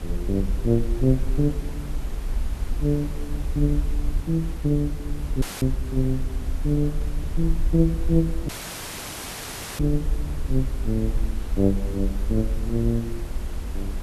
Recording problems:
background hiss; slope -5 dB per octave, SNR 15 dB
low-frequency rumble; below 54 Hz, SNR 5 dB
wind on the microphone; below 570 Hz, SNR 25 dB
audio cutting out; at 5.5 s and at 8.5 s for 1.5 s; filled with static

